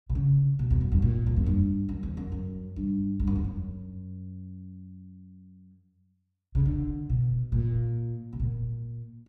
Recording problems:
none

